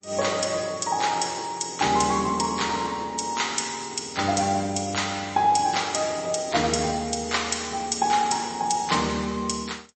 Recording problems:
lossy compression; MP3, log-spectral distance 6 dB, nothing above 8.2 kHz

